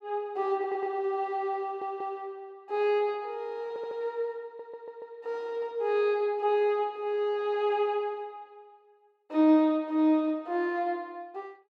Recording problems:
stutter; 4 times, first at 0.5 s

